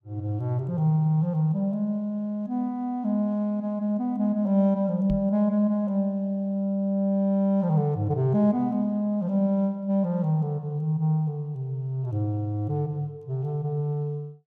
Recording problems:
knock on the microphone; at 5 s; peak 0 dB vs average level

